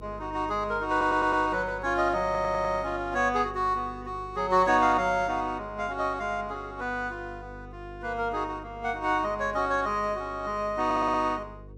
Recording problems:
electrical hum; 50 Hz, harmonics up to 500 Hz, SNR 18 dB
audio stuttering; at 1 s, at 2.5 s and at 11 s

